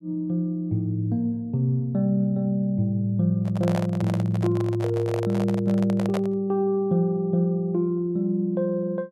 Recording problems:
handling noise; from 3.5 to 6.5 s; peak -3 dB vs average level

